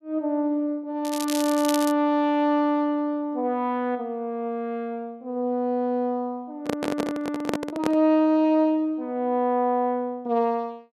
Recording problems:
crackling; at 1 s; loose cable, SNR 9 dB
microphone handling noise; from 6.5 to 8 s; peak +1 dB vs average level

